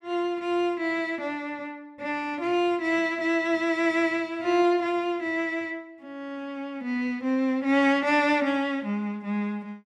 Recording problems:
none

